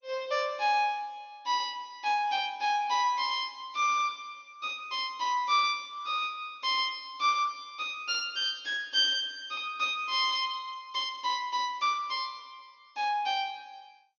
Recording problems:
lossy codec; MP2, log-spectral distance 3 dB, nothing above 5.7 kHz

